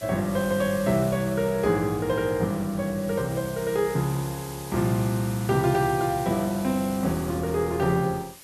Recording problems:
background hiss; slope 0 dB per octave, SNR 16 dB

